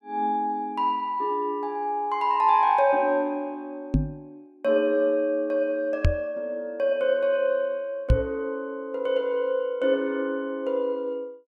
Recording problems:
microphone thump; at 4 s, at 6 s and at 8 s; peak +8 dB vs average level

